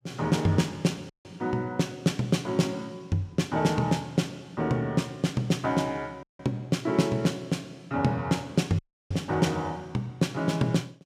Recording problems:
audio cutting out; at 1 s, at 6 s and at 9 s

